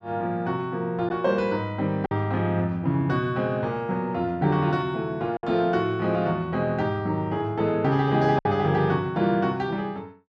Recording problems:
packet loss; 1.8% of the sound replaced, filled with silence

